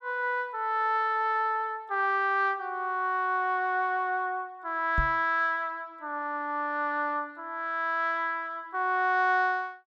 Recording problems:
microphone bump; at 5 s; peak +2 dB vs average level

